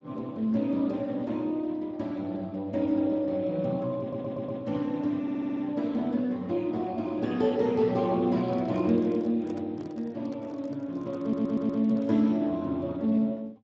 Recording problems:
codec artefacts; Speex, log-spectral distance 2 dB
stutter; at 4 s, at 5 s and at 11 s
handling noise; from 8.5 to 12 s; peak -11 dB vs average level

